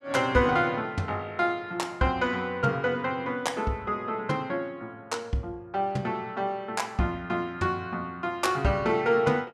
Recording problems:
none

